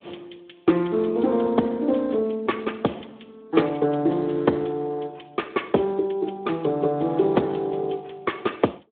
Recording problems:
phone line; 170 Hz to 3.5 kHz, Speex

